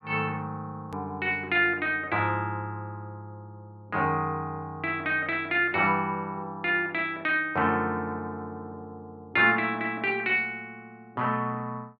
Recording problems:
hard cut with a click; at 1 s

